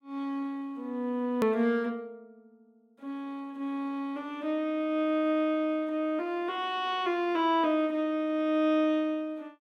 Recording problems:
click at an edit; at 1.5 s

